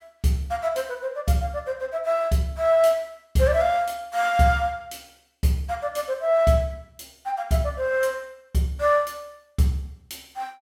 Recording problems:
none

